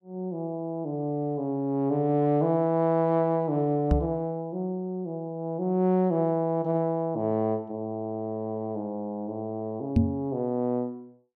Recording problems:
knock on the microphone; at 4 s and at 10 s; peak +9 dB vs average level

